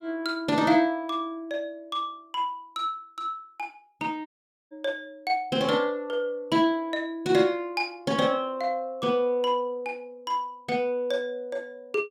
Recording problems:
dropout; at 4.5 s

